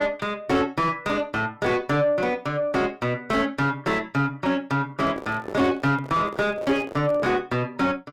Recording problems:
distorted audio; soft clipping, signal-to-distortion ratio 7 dB
microphone handling noise; from 5 to 7.5 s; peak -5 dB vs average level

